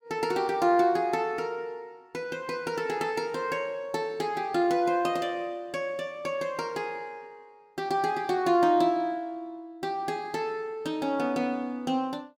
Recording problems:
none

